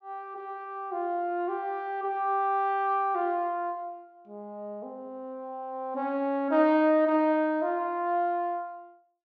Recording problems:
none

